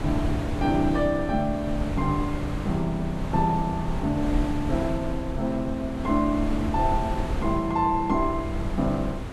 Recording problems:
wind on the microphone; below 210 Hz, SNR 5 dB

